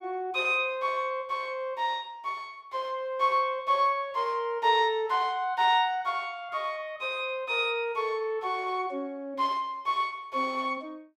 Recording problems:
none

